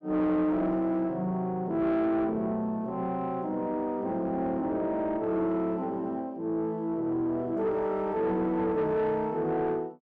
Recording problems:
distorted audio; soft clipping, signal-to-distortion ratio 11 dB

